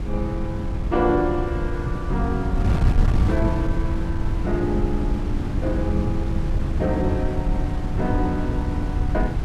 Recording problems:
wind on the microphone; below 120 Hz, SNR -2 dB

